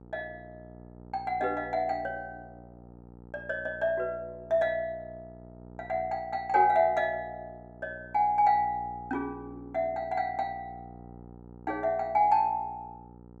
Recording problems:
hum; 60 Hz, harmonics up to 960 Hz, SNR 20 dB

